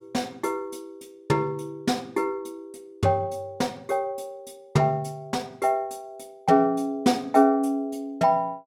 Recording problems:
none

